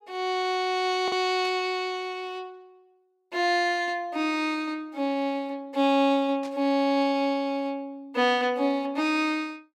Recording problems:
packet loss; 0.5% of the sound replaced, filled with the last packet
burst of static; at 1.5 s and at 6.5 s; peak -14 dB vs average level

